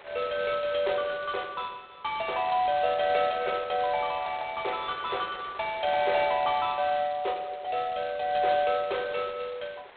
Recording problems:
phone line; 340 Hz to 4 kHz, G.726
wind on the microphone; below 2.4 kHz, SNR 21 dB

